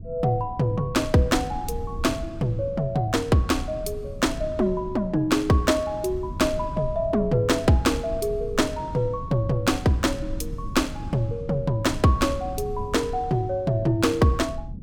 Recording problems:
low-frequency rumble; below 130 Hz, SNR 13 dB

